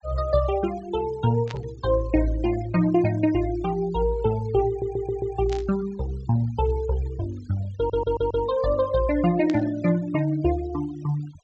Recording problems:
treble missing; nothing above 8 kHz
denoising artefacts; signal-to-artefact ratio 21 dB
static burst; at 1.5 s, at 5.5 s and at 9.5 s; peak -9 dB vs average level
audio stuttering; at 4.5 s and at 8 s

